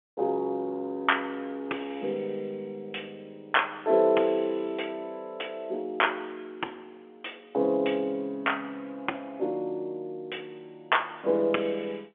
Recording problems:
phone line; 320 Hz to 3.4 kHz, G.711

